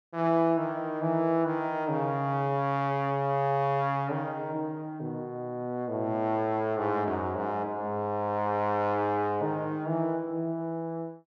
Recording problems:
none

